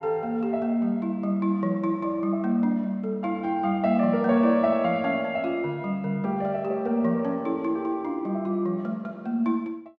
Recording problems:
none

